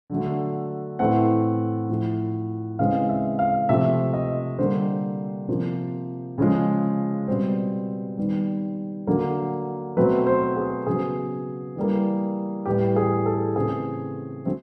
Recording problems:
none

